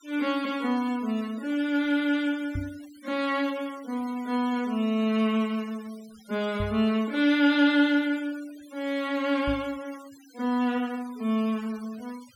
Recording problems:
denoising artefacts; signal-to-artefact ratio 22 dB
microphone bump; at 2.5 s, at 6.5 s and at 9.5 s; peak -2 dB vs average level

